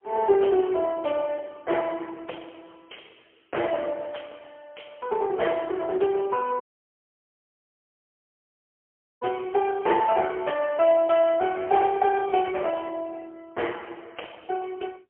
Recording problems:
phone line; 300 Hz to 3.2 kHz, AMR-NB, then MP3
audio cutting out; at 6.5 s for 2.5 s

